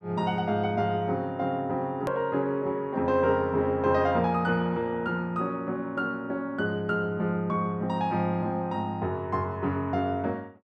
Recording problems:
click at an edit; at 2 s

